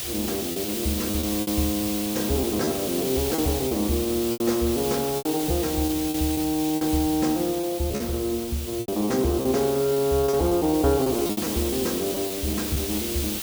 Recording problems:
background hiss; SNR 5 dB
packet loss; 10% of the sound replaced, filled with repeated pitch periods

